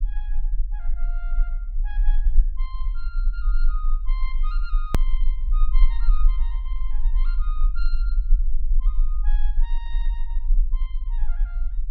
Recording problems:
low-frequency rumble; below 36 Hz, strongest tone 24 Hz, SNR -18 dB
edit click; at 5 s

